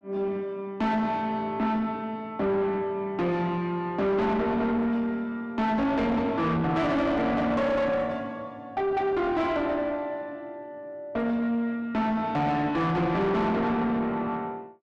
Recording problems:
distorted audio; soft clipping, signal-to-distortion ratio 7 dB

